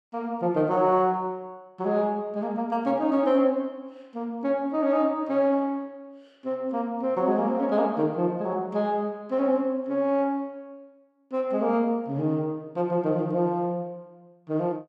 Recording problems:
none

